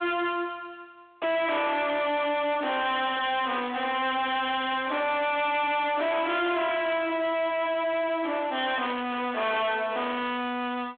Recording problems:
phone line; 260 Hz to 3.9 kHz, G.726
distortion; soft clipping, signal-to-distortion ratio 6 dB

